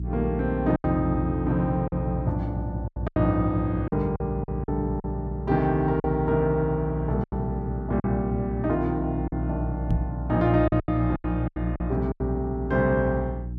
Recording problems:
hum; 60 Hz, harmonics up to 360 Hz, SNR 6 dB
packet loss; 8% of the sound replaced, filled with silence
microphone bump; at 10 s; peak +4 dB vs average level

